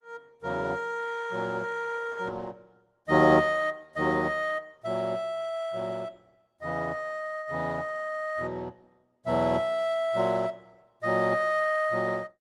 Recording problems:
lossy codec; Opus, log-spectral distance 3 dB

